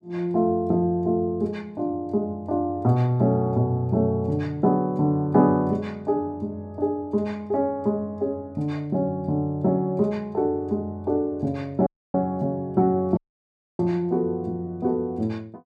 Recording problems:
dropout; at 12 s and at 13 s for 0.5 s

